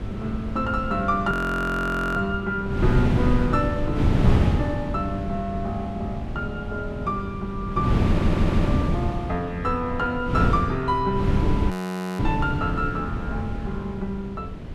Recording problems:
wind noise; below 220 Hz, SNR 0 dB
audio freezing; at 1.5 s for 1 s and at 12 s
audio stuttering; at 8 s

